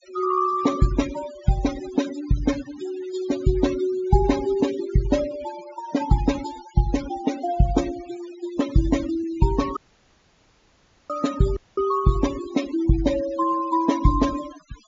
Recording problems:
low-pass filter; nothing above 7.3 kHz
noise reduction artefacts; signal-to-artefact ratio 14 dB
dropout; at 10 s for 1.5 s and at 12 s

